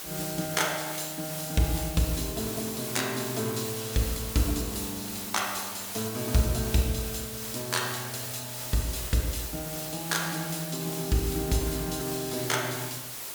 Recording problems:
hiss; slope -1 dB per octave, SNR 5 dB

